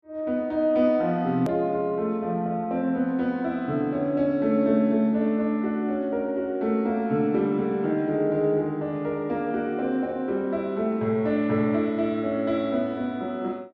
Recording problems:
edit click; at 1.5 s

